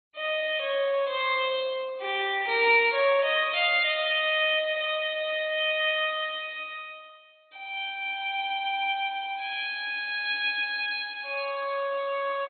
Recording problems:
codec artefacts; MP2, log-spectral distance 4 dB, nothing above 4.2 kHz

